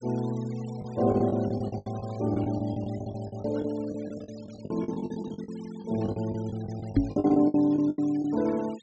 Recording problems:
low-pass filter; nothing above 8 kHz
noise reduction artefacts; signal-to-artefact ratio 22 dB
packet loss; 16% of the sound replaced, filled with the last packet
knock on the microphone; at 7 s; peak +10 dB vs average level

